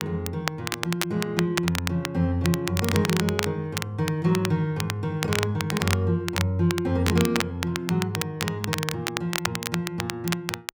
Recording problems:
crackling; vinyl, SNR 5 dB

